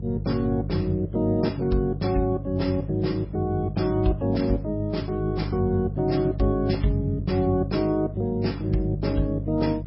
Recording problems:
lossy codec; MP3, log-spectral distance 2 dB, nothing above 5.3 kHz
electrical hum; 50 Hz, harmonics up to 350 Hz, SNR 7 dB

